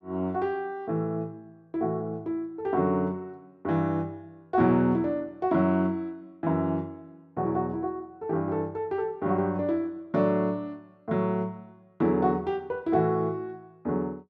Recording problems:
none

